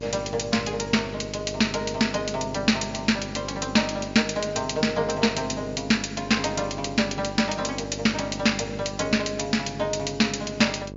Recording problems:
low-pass filter; nothing above 7.3 kHz
hum; 50 Hz, harmonics up to 1.1 kHz, SNR 13 dB

